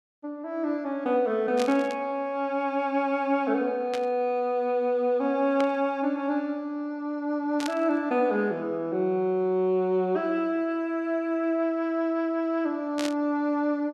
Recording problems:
burst of static; 5 times, first at 1.5 s; peak -3 dB vs average level

